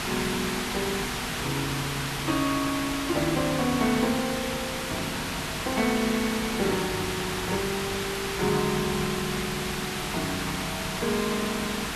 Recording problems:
hum; 50 Hz, harmonics up to 450 Hz, SNR 13 dB
background hiss; SNR 1 dB

